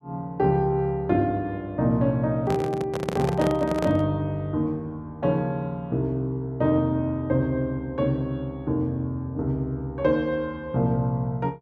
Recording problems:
handling noise; from 2.5 to 4 s; peak +2 dB vs average level

